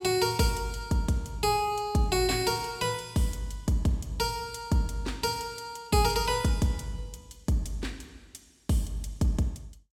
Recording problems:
none

